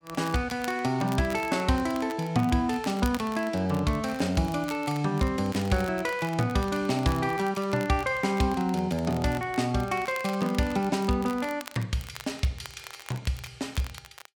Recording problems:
crackling; vinyl, SNR 18 dB

